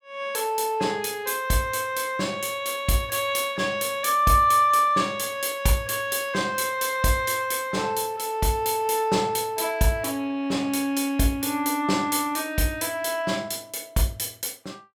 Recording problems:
none

